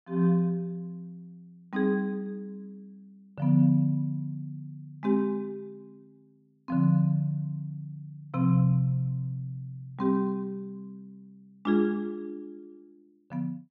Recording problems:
none

